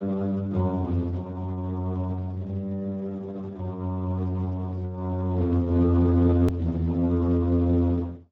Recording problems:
codec artefacts; Opus, then Speex, log-spectral distance 2 dB, nothing above 18.9 kHz
edit click; at 6.5 s

